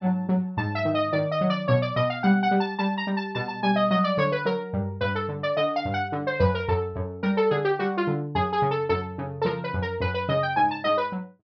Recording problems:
treble cut off; nothing above 5.5 kHz

